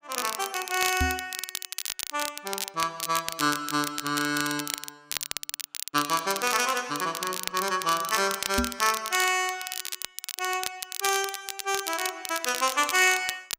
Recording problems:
crackling; vinyl, SNR 6 dB
knock on the microphone; at 1 s and at 8.5 s; peak +3 dB vs average level

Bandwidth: 15.5 kHz